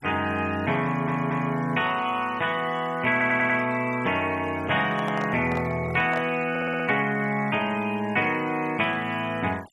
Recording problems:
denoising artefacts; signal-to-artefact ratio 22 dB
stutter; at 1 s, at 3 s and at 6.5 s
microphone handling noise; from 5 to 6.5 s; peak -4 dB vs average level

